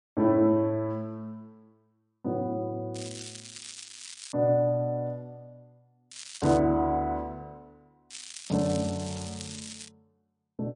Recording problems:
lossy codec; MP3, log-spectral distance 8 dB
crackle; from 3 to 4.5 s, at 6 s and from 8 to 10 s; loose cable, SNR 13 dB

